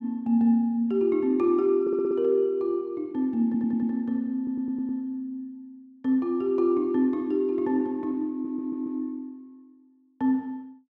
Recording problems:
audio stuttering; 4 times, first at 2 s

